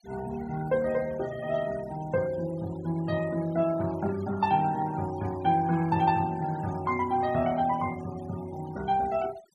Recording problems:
noise reduction artefacts; signal-to-artefact ratio 18 dB

